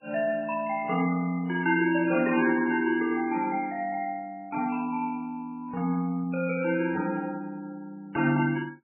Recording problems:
codec artefacts; MP3, log-spectral distance 3 dB, nothing above 2.4 kHz

